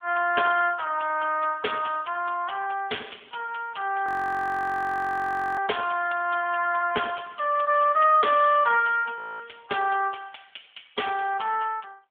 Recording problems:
phone line; 340 Hz to 3.4 kHz, AMR-NB
audio freezing; at 4 s for 1.5 s and at 9 s

